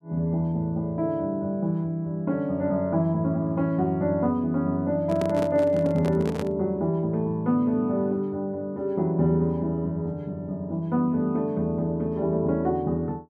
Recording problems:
microphone handling noise; from 5 to 6.5 s; peak -2 dB vs average level

